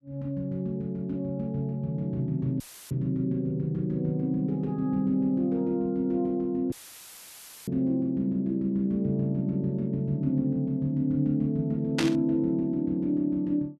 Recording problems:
audio cutting out; at 2.5 s and at 6.5 s for 1 s; filled with static
static burst; at 12 s; peak +3 dB vs average level

